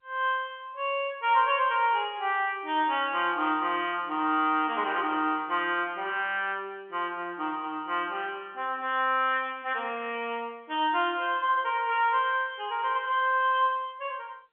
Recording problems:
telephone audio; 240 Hz to 3.4 kHz, G.711

